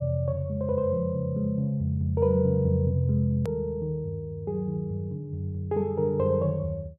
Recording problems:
edit click; at 3.5 s

